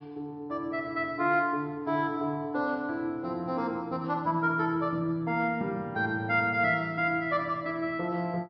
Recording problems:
treble cut off; nothing above 5.5 kHz

